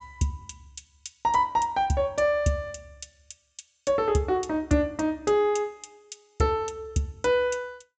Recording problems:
treble cut off; nothing above 8 kHz

